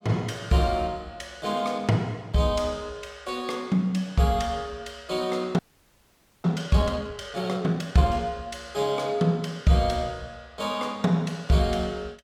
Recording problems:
audio freezing; at 5.5 s for 1 s

